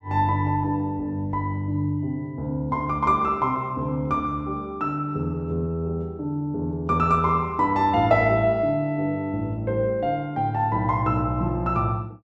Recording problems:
none

